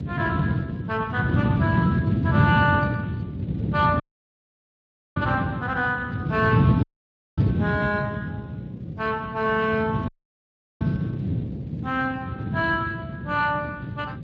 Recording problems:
lossy codec; Speex, log-spectral distance 3 dB, nothing above 7.3 kHz
hum; 60 Hz, harmonics up to 540 Hz, SNR 20 dB
wind on the microphone; below 230 Hz, SNR 0 dB
dropout; at 4 s for 1 s, at 7 s for 0.5 s and at 10 s for 0.5 s

